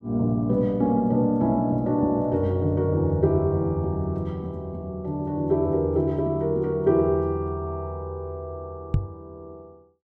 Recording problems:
microphone bump; at 9 s; peak +5 dB vs average level

